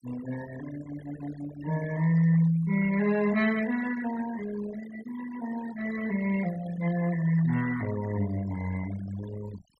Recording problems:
denoising artefacts; signal-to-artefact ratio 15 dB

